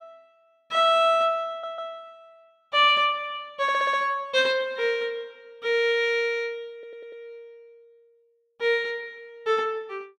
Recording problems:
stutter; at 1.5 s, at 3.5 s and at 6.5 s

